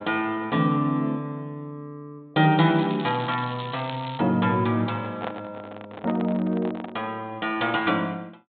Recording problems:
low-pass filter; nothing above 4 kHz
crackling; from 3 to 4 s; loose cable, SNR 16 dB
handling noise; from 5 to 7 s; peak -3 dB vs average level

